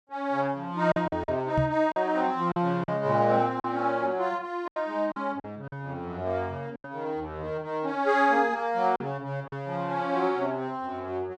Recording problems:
packet loss; 6% of the sound replaced, filled with silence
knock on the microphone; at 1.5 s; peak +4 dB vs average level

